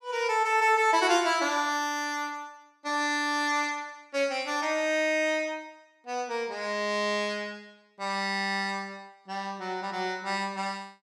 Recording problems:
none

